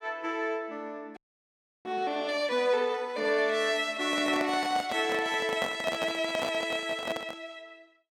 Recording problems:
audio freezing; at 1 s for 0.5 s
microphone handling noise; from 4 to 7.5 s; peak -1 dB vs average level

